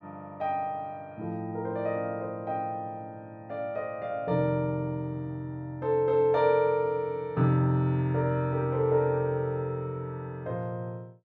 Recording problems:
none

